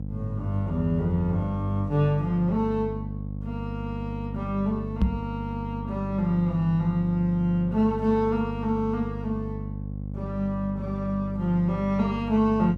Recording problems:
hum; 50 Hz, harmonics up to 550 Hz, SNR 7 dB
knock on the microphone; at 5 s; peak +8 dB vs average level

